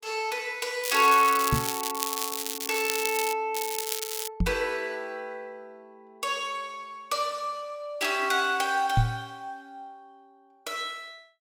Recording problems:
crackle; from 1 to 3.5 s and at 3.5 s; loose cable, SNR 3 dB
microphone bump; at 1.5 s, at 4.5 s and at 9 s; peak +7 dB vs average level

